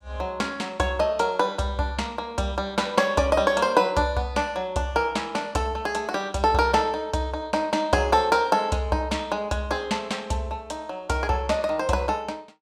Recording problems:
none

